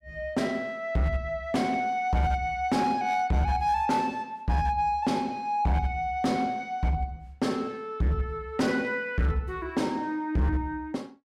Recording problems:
distorted audio; hard clipping, signal-to-distortion ratio 11 dB

